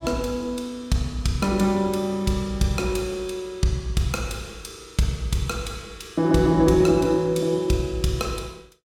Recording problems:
none

